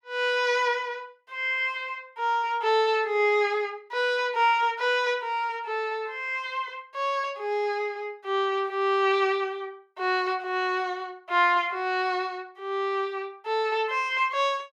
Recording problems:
none

